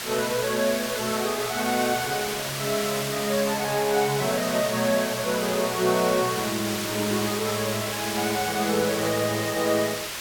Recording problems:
background hiss; slope 0 dB per octave, SNR 4 dB

